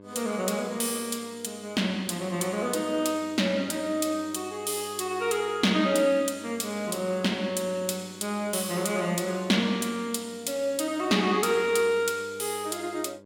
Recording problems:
hum; 50 Hz, harmonics up to 1.2 kHz, SNR 22 dB

